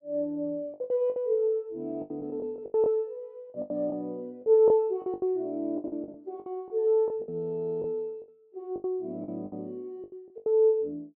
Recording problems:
lost packets; 14% of the sound replaced, filled with the last packet

